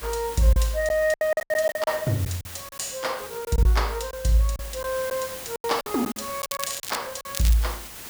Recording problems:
hiss; slope -1 dB per octave, SNR 12 dB
packet loss; 11% of the sound replaced, filled with silence
crackling; at 6.5 s and at 7.5 s; loose cable, SNR 8 dB

